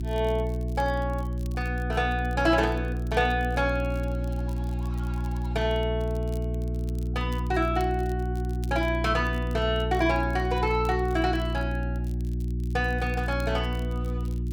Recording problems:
hum; 60 Hz, harmonics up to 360 Hz, SNR 2 dB
crackle; vinyl, SNR 26 dB

